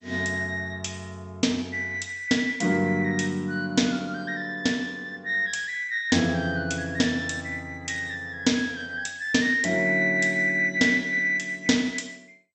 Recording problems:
lossy compression; MP2, log-spectral distance 3 dB, nothing above 7.8 kHz

